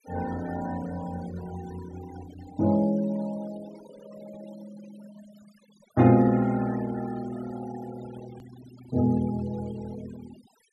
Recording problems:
noise reduction artefacts; signal-to-artefact ratio 19 dB
click at an edit; at 8.5 s

